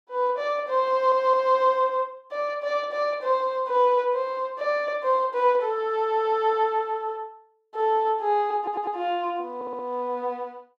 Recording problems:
stutter; at 1 s, at 8.5 s and at 9.5 s

